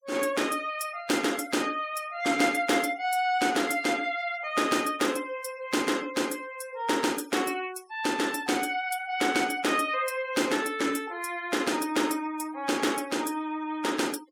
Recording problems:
noise reduction artefacts; signal-to-artefact ratio 19 dB

